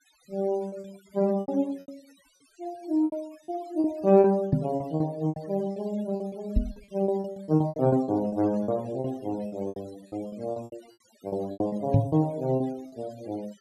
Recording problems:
noise reduction artefacts; signal-to-artefact ratio 24 dB
packet loss; 16% of the sound replaced, filled with repeated pitch periods
microphone thump; at 4.5 s, at 6.5 s and at 12 s; peak +9 dB vs average level

